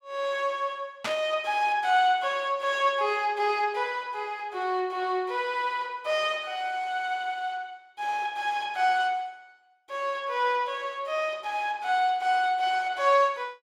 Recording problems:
burst of static; at 1 s; peak 0 dB vs average level

